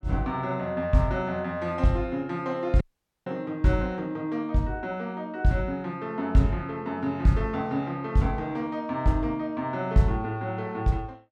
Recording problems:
audio cutting out; at 3 s

